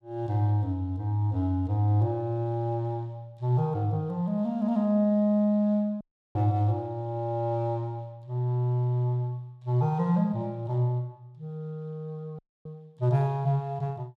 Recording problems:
audio cutting out; at 6 s and at 12 s

